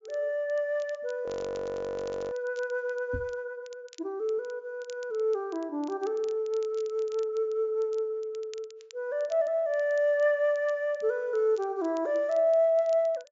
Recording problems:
treble cut off; nothing above 7.3 kHz
crackling; vinyl, SNR 27 dB
frozen audio; at 1.5 s for 1 s
knock on the microphone; at 3 s; peak -3 dB vs average level

